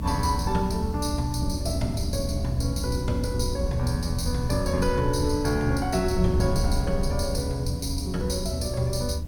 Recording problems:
hum; 60 Hz, harmonics up to 300 Hz, SNR 7 dB
hiss; slope -2 dB per octave, SNR 28 dB
rumble; below 78 Hz, strongest tone 78 Hz, SNR 7 dB
wind on the microphone; below 130 Hz, SNR 6 dB

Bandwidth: 17 kHz